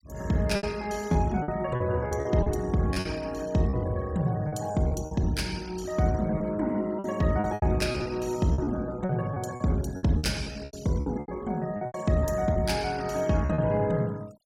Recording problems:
denoising artefacts; signal-to-artefact ratio 21 dB
packet loss; 11% of the sound replaced, filled with repeated pitch periods

